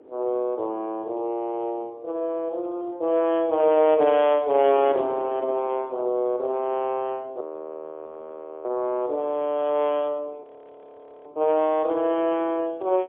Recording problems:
telephone audio; 280 Hz to 3.4 kHz, AMR-NB, then MP3
wind on the microphone; below 550 Hz, SNR 22 dB
audio freezing; at 7.5 s for 1 s and at 10 s for 1 s

